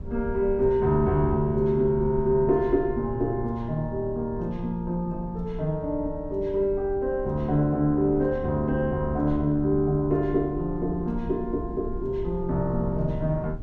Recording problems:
rumble; below 84 Hz, SNR 13 dB

